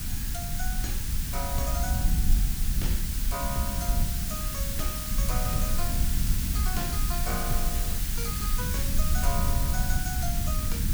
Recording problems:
hiss; slope +1 dB per octave, SNR -4 dB
low-frequency rumble; below 74 Hz, SNR -6 dB

